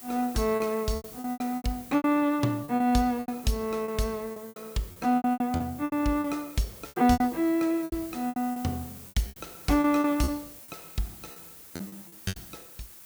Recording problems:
background hiss; slope -1 dB per octave, SNR 17 dB
packet loss; 16% of the sound replaced, filled with repeated pitch periods

